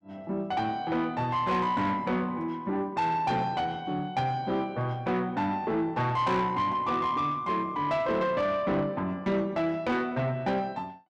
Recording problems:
distortion; soft clipping, signal-to-distortion ratio 11 dB

